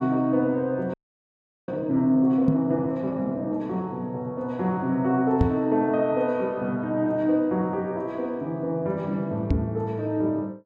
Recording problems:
frozen audio; at 1 s for 0.5 s
microphone bump; at 2.5 s, at 5.5 s and at 9.5 s; peak +7 dB vs average level

